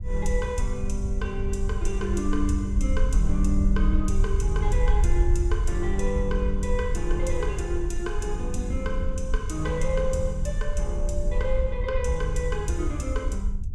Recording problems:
rumble; below 60 Hz, SNR -2 dB

